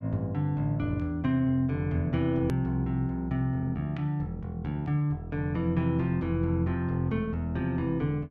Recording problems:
click at an edit; at 2.5 s

